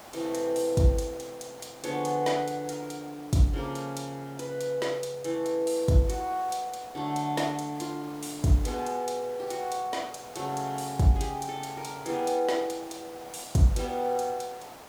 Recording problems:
hiss; SNR 18 dB

